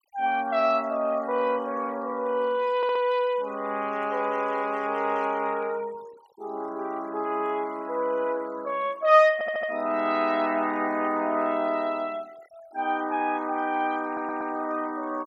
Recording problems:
noise reduction artefacts; signal-to-artefact ratio 23 dB
stutter; at 3 s, at 9.5 s and at 14 s

